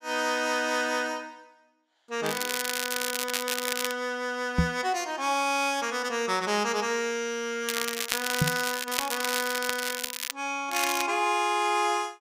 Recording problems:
crackle; from 2.5 to 4 s, from 7.5 to 10 s and at 11 s; loose cable, SNR 2 dB
knock on the microphone; at 4.5 s and at 8.5 s; peak +8 dB vs average level

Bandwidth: 15.5 kHz